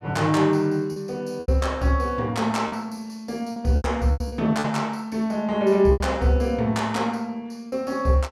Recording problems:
lost packets; 7% of the sound replaced, filled with repeated pitch periods

